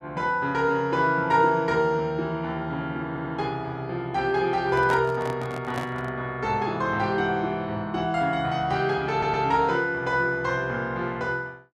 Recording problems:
audio stuttering; at 3 s and at 9 s
microphone handling noise; from 4.5 to 6 s; peak -3 dB vs average level

